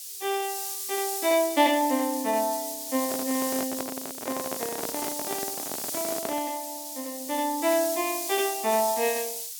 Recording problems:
hiss; SNR 4 dB
microphone handling noise; from 3 to 6.5 s; peak -2 dB vs average level

